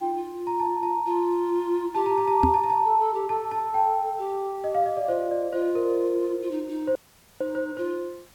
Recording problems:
hiss; slope -2 dB per octave, SNR 29 dB
microphone bump; at 2.5 s; peak +5 dB vs average level
audio cutting out; at 7 s

